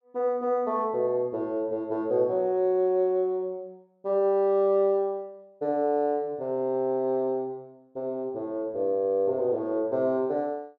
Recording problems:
none

